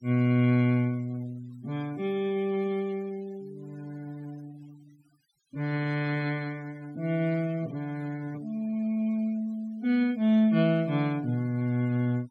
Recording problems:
noise reduction artefacts; signal-to-artefact ratio 24 dB

